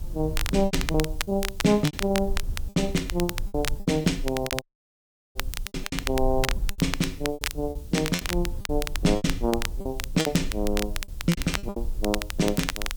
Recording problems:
background hiss; SNR 25 dB
low-frequency rumble; below 54 Hz, strongest tone 24 Hz, SNR 9 dB
crackle; vinyl, SNR 7 dB
lost packets; 14% of the sound replaced, filled with repeated pitch periods
audio cutting out; at 4.5 s for 0.5 s

